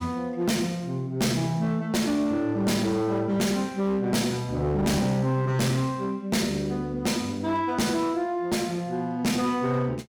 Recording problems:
distorted audio; hard clipping, signal-to-distortion ratio 10 dB

